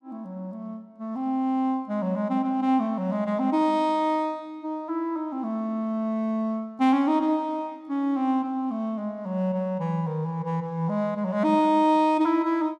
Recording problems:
none

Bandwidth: 14.5 kHz